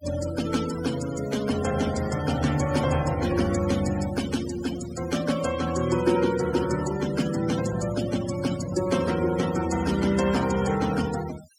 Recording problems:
denoising artefacts; signal-to-artefact ratio 12 dB

